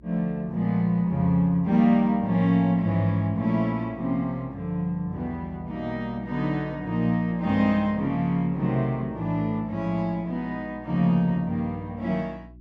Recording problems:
hum; 60 Hz, harmonics up to 360 Hz, SNR 23 dB

